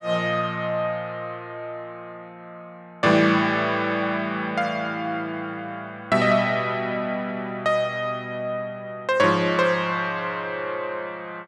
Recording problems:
none

